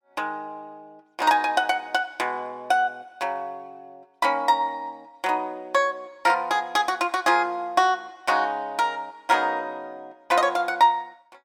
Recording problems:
none

